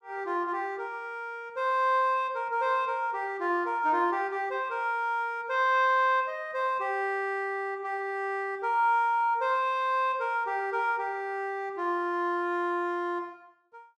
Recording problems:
none

